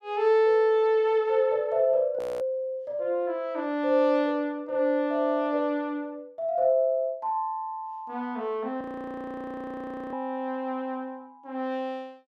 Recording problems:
frozen audio; at 2 s and at 9 s for 1.5 s

